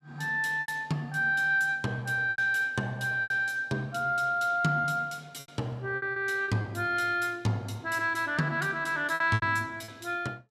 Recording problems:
lost packets; 7% of the sound replaced, filled with repeated pitch periods

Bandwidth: 14.5 kHz